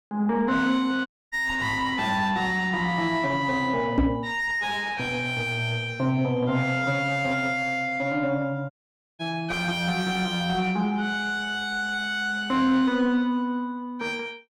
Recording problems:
distortion; soft clipping, signal-to-distortion ratio 7 dB
audio cutting out; at 1 s and at 8.5 s
microphone bump; at 4 s; peak +7 dB vs average level

